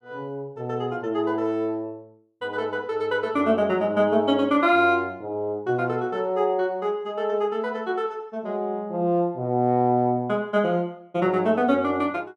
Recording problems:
none

